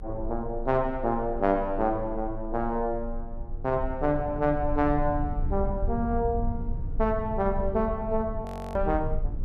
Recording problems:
low-frequency rumble; below 70 Hz, strongest tone 24 Hz, SNR 7 dB
audio freezing; at 8.5 s

